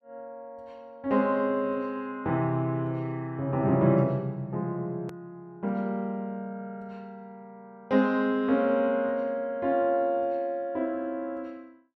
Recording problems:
edit click; at 5 s

